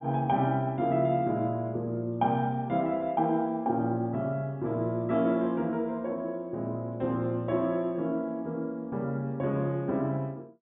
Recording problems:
treble missing; nothing above 4 kHz

